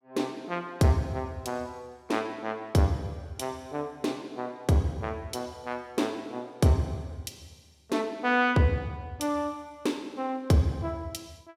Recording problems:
none

